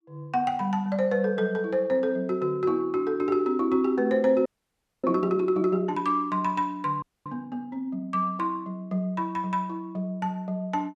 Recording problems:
frozen audio; at 4.5 s for 0.5 s and at 7 s

